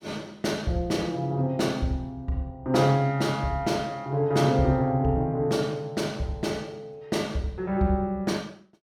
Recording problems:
none

